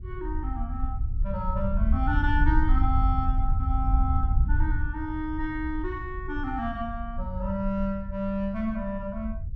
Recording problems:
rumble; below 70 Hz, SNR -2 dB

